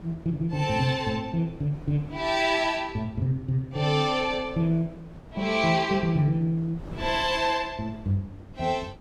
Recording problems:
wind on the microphone; below 370 Hz, SNR 19 dB

